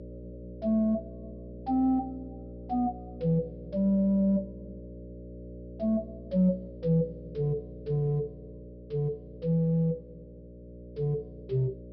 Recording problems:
treble cut off; nothing above 5.5 kHz
electrical hum; 60 Hz, harmonics up to 600 Hz, SNR 15 dB

